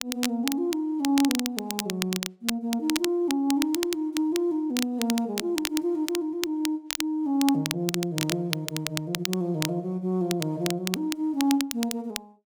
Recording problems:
crackle; vinyl, SNR 5 dB

